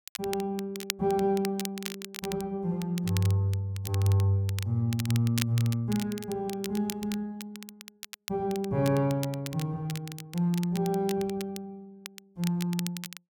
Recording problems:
crackle; vinyl, SNR 12 dB

